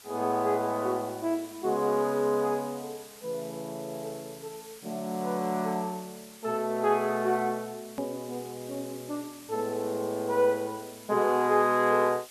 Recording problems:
hiss; slope +1 dB per octave, SNR 18 dB
edit click; at 8 s

